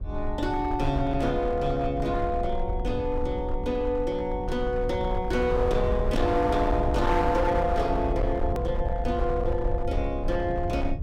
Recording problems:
distorted audio; hard clipping, signal-to-distortion ratio 11 dB
low-frequency rumble; below 84 Hz, SNR 5 dB
hard cut with a click; at 8.5 s

